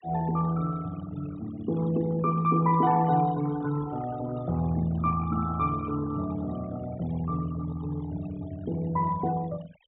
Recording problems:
treble cut off; nothing above 4 kHz
noise reduction artefacts; signal-to-artefact ratio 18 dB

